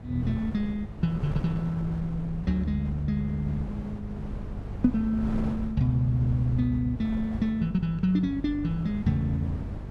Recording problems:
hum; 50 Hz, harmonics up to 500 Hz, SNR 13 dB
wind noise; below 230 Hz, SNR 11 dB

